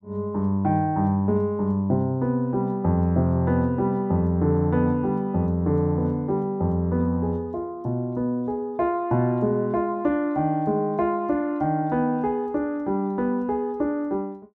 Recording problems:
none

